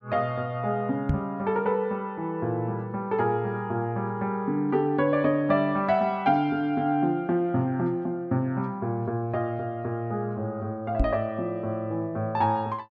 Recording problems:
knock on the microphone; at 1 s and at 11 s; peak +5 dB vs average level

